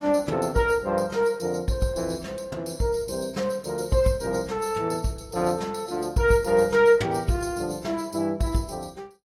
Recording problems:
codec artefacts; AAC, log-spectral distance 3 dB, nothing above 13.8 kHz

